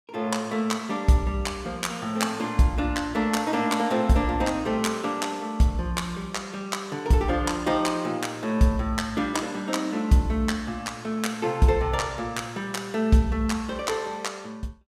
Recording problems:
none

